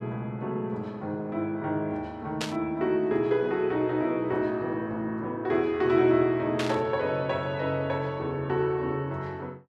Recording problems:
static burst; at 2.5 s and at 6.5 s; peak 0 dB vs average level

